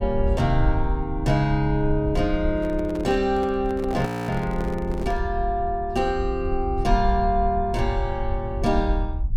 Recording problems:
low-frequency rumble; below 66 Hz, SNR 6 dB
microphone handling noise; from 2.5 to 5 s; peak -3 dB vs average level
audio freezing; at 4 s

